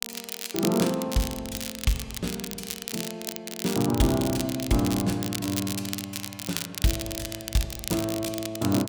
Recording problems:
crackle; vinyl, SNR 5 dB

